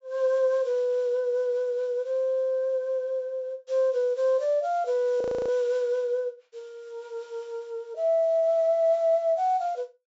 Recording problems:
treble cut off; nothing above 8 kHz
frozen audio; at 5 s

